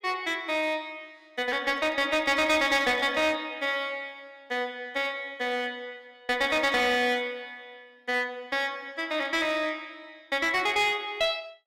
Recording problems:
distorted audio; hard clipping, uneven, signal-to-distortion ratio 11 dB

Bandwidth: 16.5 kHz